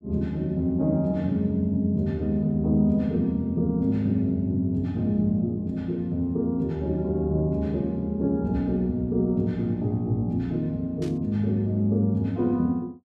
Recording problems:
static burst; at 11 s; peak -15 dB vs average level

